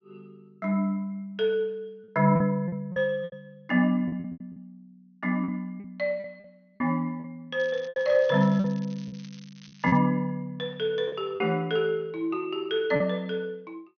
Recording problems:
treble missing; nothing above 6.3 kHz
packet loss; 8% of the sound replaced, filled with repeated pitch periods
crackling; from 7.5 to 10 s; loose cable, SNR 25 dB

